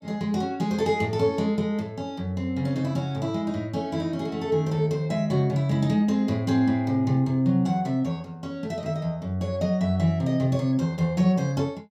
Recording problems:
none

